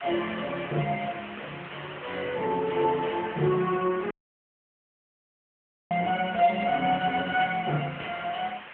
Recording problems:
phone line; 190 Hz to 3.3 kHz, AMR-NB
hiss; SNR 15 dB
audio cutting out; at 4 s for 2 s

